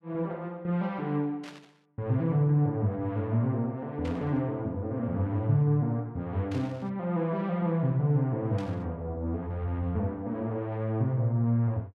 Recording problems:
burst of static; 4 times, first at 1.5 s; peak -12 dB vs average level

